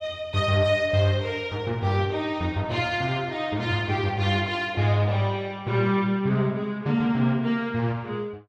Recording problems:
none

